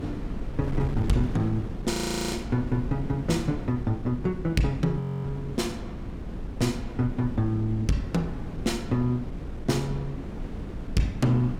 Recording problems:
distortion; hard clipping, uneven, signal-to-distortion ratio 12 dB
wind noise; below 230 Hz, SNR 8 dB
frozen audio; at 2 s and at 5 s

